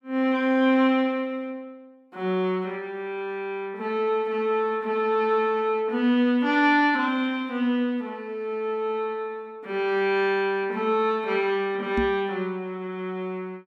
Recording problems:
knock on the microphone; at 12 s; peak +1 dB vs average level

